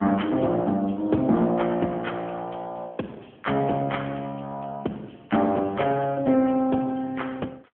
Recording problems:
phone line; 150 Hz to 3.3 kHz, AMR-NB

